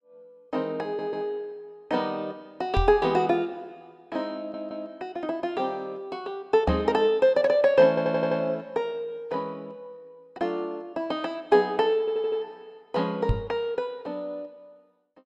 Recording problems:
audio stuttering; 4 times, first at 1 s
microphone thump; at 3 s, at 6.5 s and at 13 s; peak +5 dB vs average level

